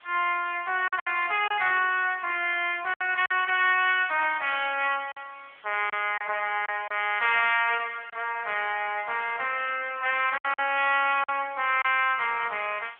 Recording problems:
telephone audio; 340 Hz to 3.4 kHz, AMR-NB
background hiss; SNR 28 dB
lost packets; 4% of the sound replaced, filled with silence

